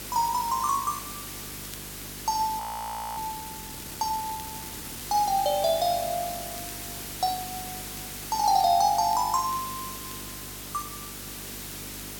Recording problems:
electrical hum; 50 Hz, harmonics up to 450 Hz, SNR 19 dB
hiss; slope -1 dB per octave, SNR 9 dB
crackling; vinyl, SNR 27 dB
frozen audio; at 2.5 s for 0.5 s

